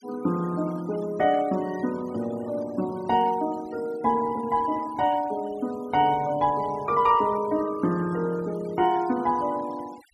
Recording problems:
denoising artefacts; signal-to-artefact ratio 21 dB

